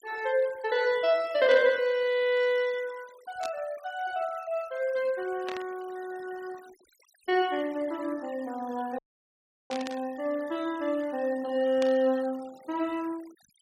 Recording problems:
denoising artefacts; signal-to-artefact ratio 22 dB
burst of static; 5 times, first at 1.5 s; peak -6 dB vs average level
audio cutting out; at 9 s for 0.5 s

